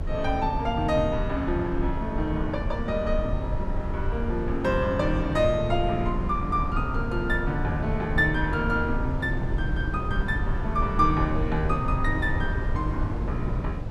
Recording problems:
low-frequency rumble; below 100 Hz, SNR 3 dB

